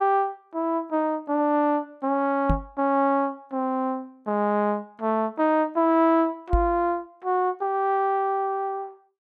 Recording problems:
knock on the microphone; at 2.5 s and at 6.5 s; peak +4 dB vs average level

